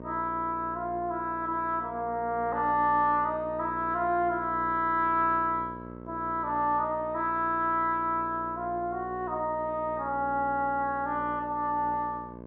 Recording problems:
hum; 60 Hz, harmonics up to 1.2 kHz, SNR 15 dB

